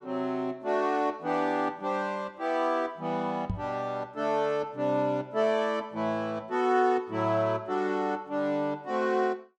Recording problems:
microphone bump; at 3.5 s; peak +1 dB vs average level

